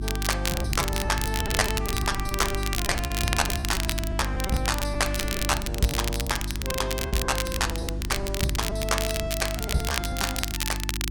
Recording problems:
hum; 50 Hz, harmonics up to 350 Hz, SNR 3 dB
crackle; vinyl, SNR 3 dB
packet loss; 14% of the sound replaced, filled with repeated pitch periods

